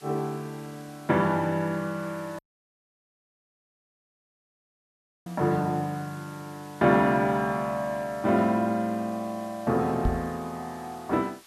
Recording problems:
hiss; slope +1 dB per octave, SNR 24 dB
dropout; at 2.5 s for 3 s
knock on the microphone; at 10 s; peak +2 dB vs average level

